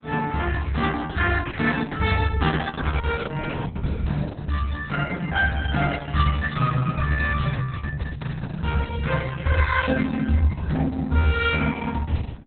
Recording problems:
lossy compression; Opus, log-spectral distance 5 dB, nothing above 3.8 kHz

